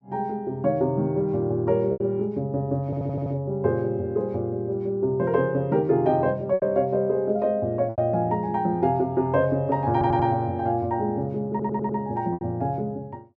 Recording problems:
packet loss; 3% of the sound replaced, filled with repeated pitch periods
audio stuttering; at 3 s, at 10 s and at 12 s

